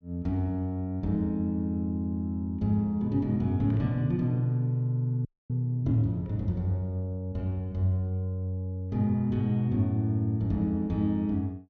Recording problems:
frozen audio; at 5.5 s

